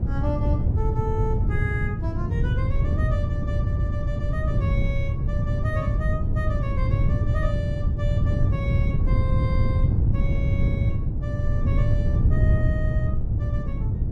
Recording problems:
wind noise; below 120 Hz, SNR -11 dB

